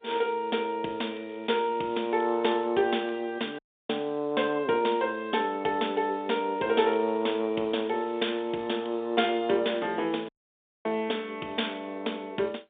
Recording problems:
phone line; 260 Hz to 3.6 kHz, G.711
crackle; from 1.5 to 2.5 s, from 6.5 to 9 s and at 10 s; loose cable, SNR 28 dB
audio cutting out; at 3.5 s and at 10 s for 0.5 s

